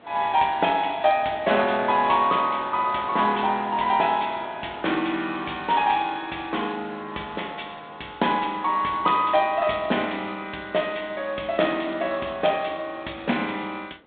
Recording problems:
telephone audio; 280 Hz to 3.7 kHz, G.726
wind on the microphone; below 1.3 kHz, SNR 23 dB

